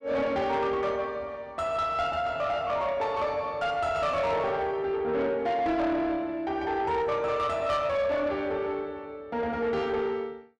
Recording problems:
distorted audio; soft clipping, signal-to-distortion ratio 12 dB

